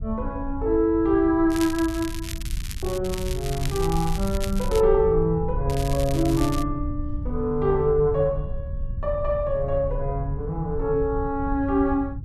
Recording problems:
rumble; below 86 Hz, SNR 8 dB
crackle; from 1.5 to 3 s, from 3 to 5 s and at 5.5 s; loose cable, SNR 13 dB

